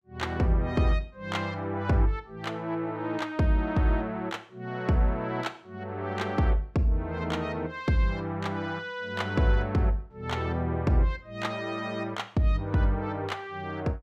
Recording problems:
none

